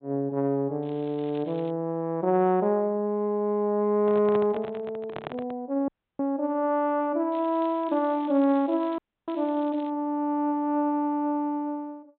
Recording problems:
low-pass filter; nothing above 4 kHz
crackle; at 1 s and from 7.5 to 10 s; loose cable, SNR 27 dB
microphone handling noise; from 4 to 5.5 s; peak -5 dB vs average level
audio cutting out; at 6 s and at 9 s

